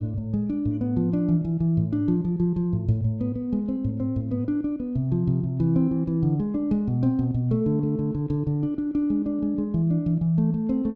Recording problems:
none

